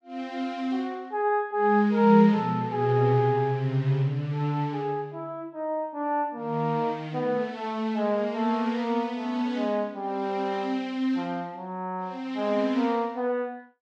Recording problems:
none

